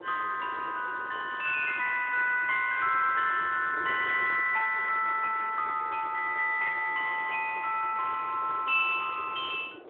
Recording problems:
telephone audio; 990 Hz to 2 kHz, Speex
wind on the microphone; below 590 Hz, SNR 19 dB

